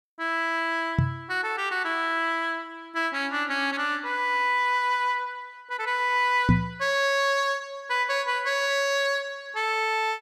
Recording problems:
microphone thump; at 1 s and at 6.5 s; peak +9 dB vs average level

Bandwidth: 14.5 kHz